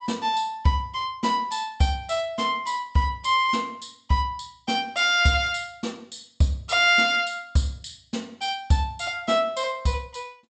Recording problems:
treble missing; nothing above 8 kHz

